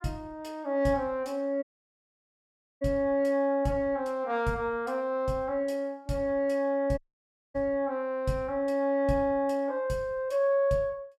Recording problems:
dropout; at 1.5 s for 1 s and at 7 s for 0.5 s

